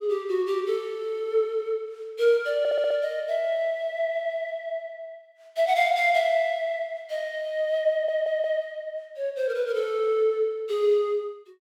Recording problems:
stutter; at 2.5 s and at 8 s

